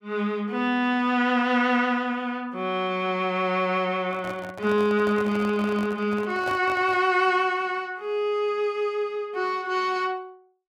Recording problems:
handling noise; from 4 to 7 s; peak -7 dB vs average level

